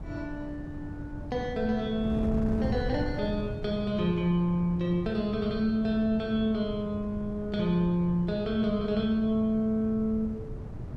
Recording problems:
wind noise; below 190 Hz, SNR 10 dB

